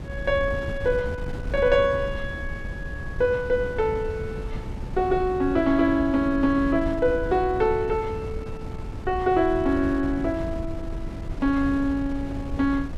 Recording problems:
wind noise; below 140 Hz, SNR 10 dB

